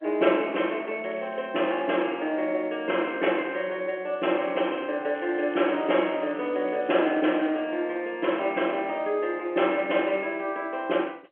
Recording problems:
phone line; 240 Hz to 3.3 kHz, G.711
crackle; at 1 s and from 5 to 7.5 s; loose cable, SNR 25 dB

